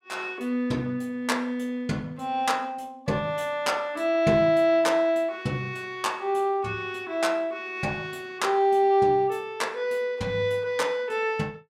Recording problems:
none

